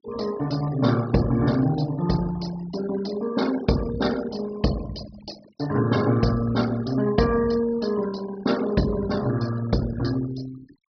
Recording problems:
low-pass filter; nothing above 5.5 kHz
denoising artefacts; signal-to-artefact ratio 16 dB

